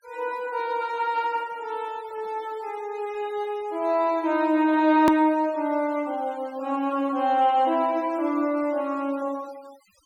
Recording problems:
denoising artefacts; signal-to-artefact ratio 25 dB
click at an edit; at 5 s

